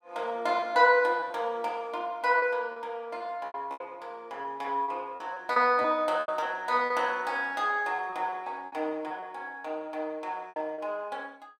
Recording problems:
lost packets; 9% of the sound replaced, filled with repeated pitch periods

